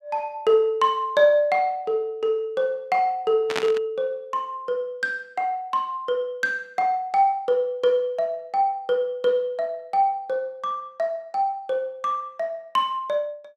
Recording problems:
burst of static; at 3.5 s; peak +1 dB vs average level

